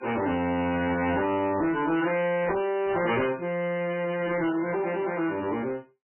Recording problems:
lossy compression; AAC, then MP3, log-spectral distance 4 dB, nothing above 2.4 kHz
distortion; soft clipping, signal-to-distortion ratio 11 dB
burst of static; at 3 s and at 4.5 s; peak -9 dB vs average level

